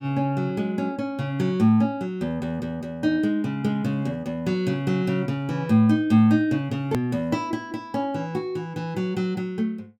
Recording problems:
click at an edit; at 7 s

